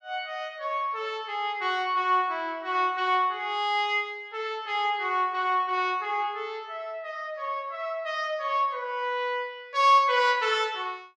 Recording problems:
none

